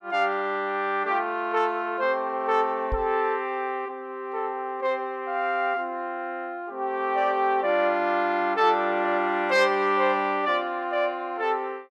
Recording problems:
microphone bump; at 3 s; peak -2 dB vs average level

